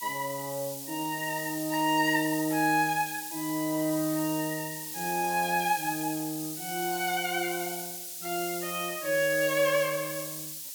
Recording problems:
background hiss; slope +7 dB per octave, SNR 7 dB

